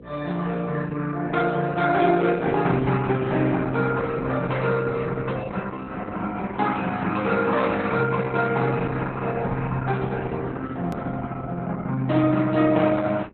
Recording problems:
lossy codec; Opus, log-spectral distance 4 dB, nothing above 13.1 kHz
electrical hum; 60 Hz, harmonics up to 540 Hz, SNR 25 dB
click at an edit; at 11 s

